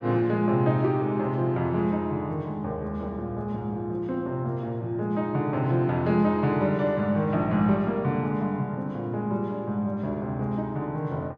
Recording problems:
none

